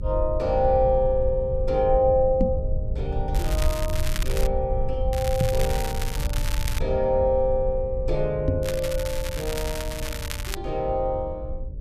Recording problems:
hum; 60 Hz, harmonics up to 600 Hz, SNR 18 dB
rumble; below 72 Hz, SNR 5 dB
microphone bump; at 2.5 s, at 5.5 s and at 8.5 s; peak +4 dB vs average level
crackling; from 3.5 to 4.5 s, from 5 to 7 s and from 8.5 to 11 s; loose cable, SNR 10 dB

